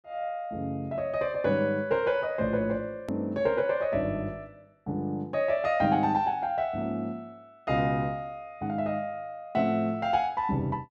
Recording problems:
edit click; at 3 s

